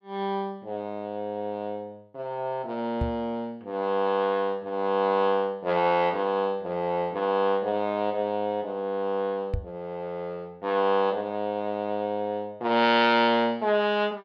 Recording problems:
knock on the microphone; at 3 s and at 9.5 s; peak +1 dB vs average level

